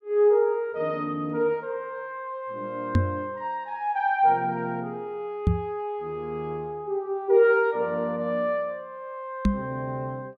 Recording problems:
microphone bump; at 3 s, at 5.5 s and at 9.5 s; peak +8 dB vs average level

